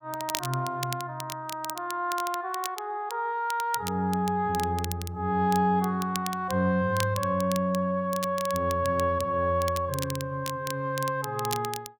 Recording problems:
crackle; vinyl, SNR 11 dB

